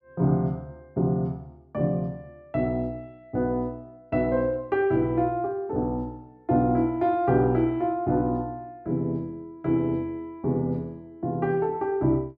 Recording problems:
none

